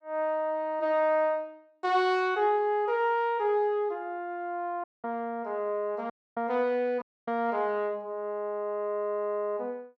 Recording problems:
audio cutting out; at 5 s, at 6 s and at 7 s

